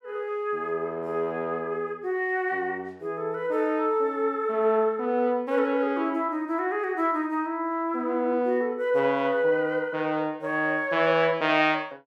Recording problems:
none

